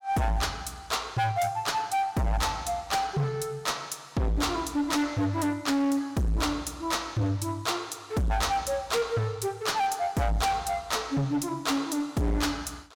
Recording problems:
distorted audio; hard clipping, uneven, signal-to-distortion ratio 6 dB

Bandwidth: 17 kHz